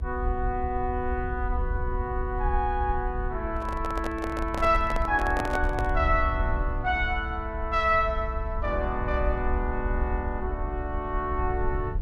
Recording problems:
low-frequency rumble; below 64 Hz, SNR 4 dB
handling noise; from 3.5 to 6 s; peak +1 dB vs average level

